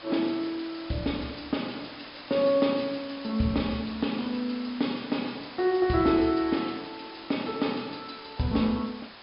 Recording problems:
treble missing; nothing above 5.5 kHz
background hiss; SNR 15 dB

